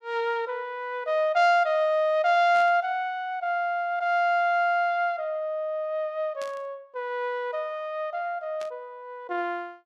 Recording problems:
burst of static; at 2.5 s, at 6.5 s and at 8.5 s; peak -13 dB vs average level

